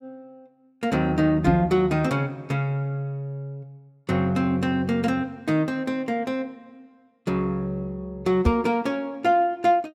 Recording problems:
microphone thump; at 1.5 s and at 8.5 s; peak +7 dB vs average level

